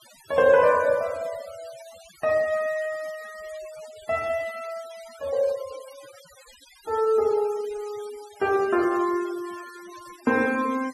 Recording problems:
noise reduction artefacts; signal-to-artefact ratio 21 dB

